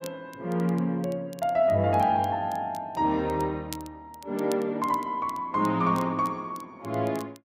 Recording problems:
crackle; vinyl, SNR 23 dB

